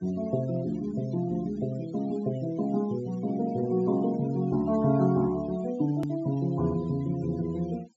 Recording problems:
treble cut off; nothing above 8 kHz
denoising artefacts; signal-to-artefact ratio 21 dB
click at an edit; at 6 s

